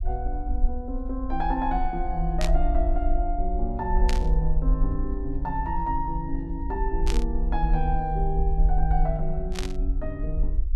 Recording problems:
rumble; below 48 Hz, SNR -1 dB
static burst; 4 times, first at 2.5 s; peak +2 dB vs average level

